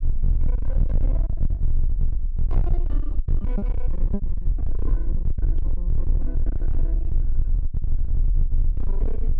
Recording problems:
distortion; hard clipping, signal-to-distortion ratio 6 dB
low-frequency rumble; below 44 Hz, strongest tone 18 Hz, SNR -14 dB
lost packets; 4% of the sound replaced, filled with repeated pitch periods
microphone thump; at 5.5 s; peak +5 dB vs average level

